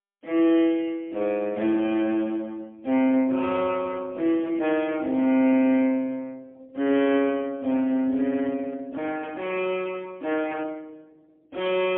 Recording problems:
telephone audio; 220 Hz to 3.4 kHz, AMR-NB, then MP3

